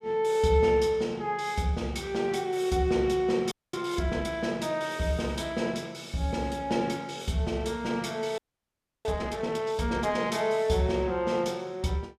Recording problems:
frozen audio; at 3.5 s and at 8.5 s for 0.5 s

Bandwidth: 14.5 kHz